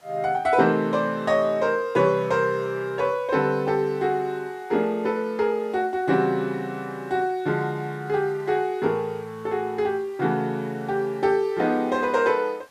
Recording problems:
hiss; SNR 30 dB

